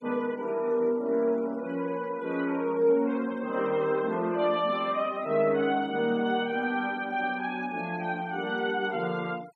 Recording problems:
noise reduction artefacts; signal-to-artefact ratio 26 dB

